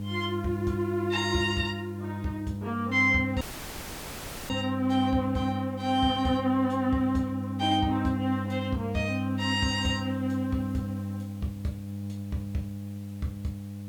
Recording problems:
electrical hum; 50 Hz, harmonics up to 500 Hz, SNR 6 dB
hiss; slope -2 dB per octave, SNR 28 dB
dropout; at 3.5 s for 1 s

